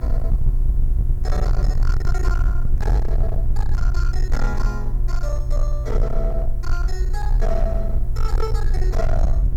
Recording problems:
distortion; hard clipping, signal-to-distortion ratio 8 dB
hum; 60 Hz, harmonics up to 720 Hz, SNR 3 dB
hiss; SNR 27 dB
low-frequency rumble; below 50 Hz, strongest tone 20 Hz, SNR -8 dB

